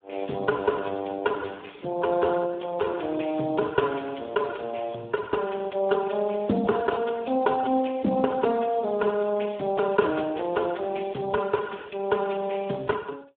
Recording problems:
telephone audio; 220 Hz to 2 kHz, Speex

